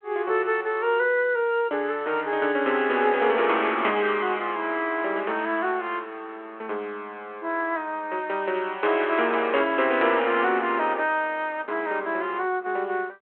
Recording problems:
telephone audio; 280 Hz to 3.3 kHz, G.726

